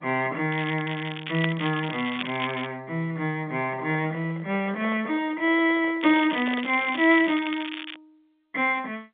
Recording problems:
telephone audio; 170 Hz to 3.6 kHz, G.711
crackling; from 0.5 to 2.5 s and from 6 to 8 s; loose cable, SNR 11 dB
microphone handling noise; from 3.5 to 7 s; peak -10 dB vs average level

